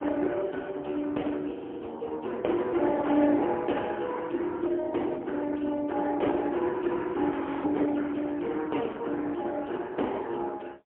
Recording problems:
telephone audio; 240 Hz to 3.8 kHz, AMR-NB, then MP3
frozen audio; at 1.5 s and at 7.5 s

